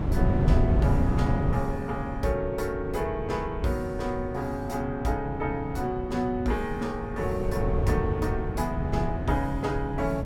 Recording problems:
wind on the microphone; below 170 Hz, SNR 1 dB

